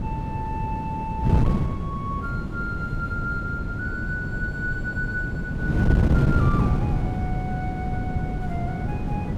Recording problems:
wind on the microphone; below 210 Hz, SNR -6 dB

